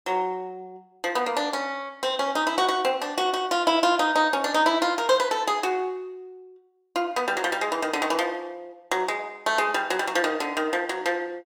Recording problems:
none

